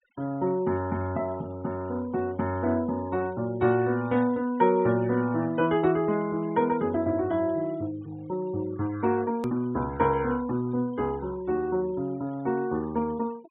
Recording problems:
treble cut off; nothing above 4 kHz
noise reduction artefacts; signal-to-artefact ratio 24 dB
hard cut with a click; at 9.5 s

